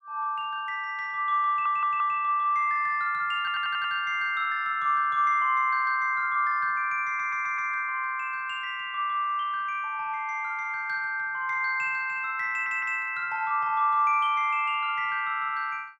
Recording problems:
stutter; 4 times, first at 1.5 s

